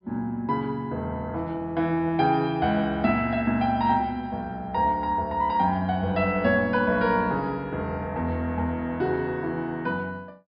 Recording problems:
treble cut off; nothing above 5.5 kHz

